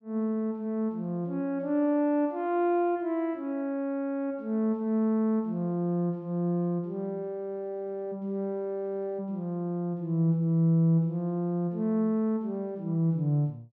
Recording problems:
none

